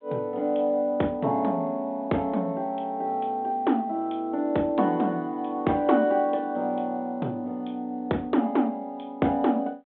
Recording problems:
telephone audio; 130 Hz to 3.8 kHz, G.726

